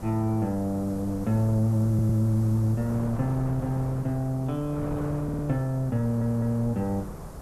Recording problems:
background hiss; slope +7 dB per octave, SNR 27 dB
wind noise; below 530 Hz, SNR 13 dB
audio stuttering; at 2 s, at 5 s and at 6 s

